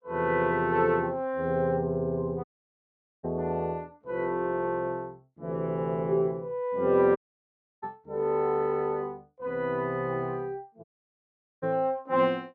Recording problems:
dropout; at 2.5 s for 1 s, at 7 s for 0.5 s and at 11 s for 1 s

